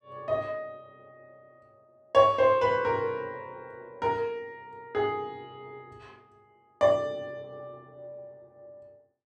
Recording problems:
none

